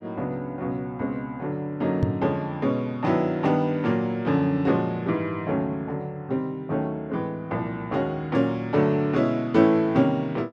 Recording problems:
microphone bump; at 2 s; peak +5 dB vs average level

